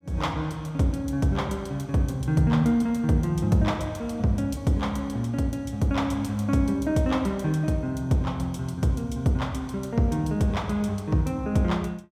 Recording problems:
none

